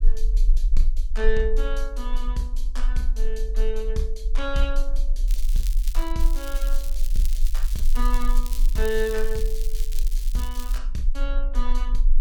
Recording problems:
low-frequency rumble; below 36 Hz, strongest tone 20 Hz, SNR -4 dB
crackling; at 5.5 s and from 6 to 11 s; loose cable, SNR 9 dB

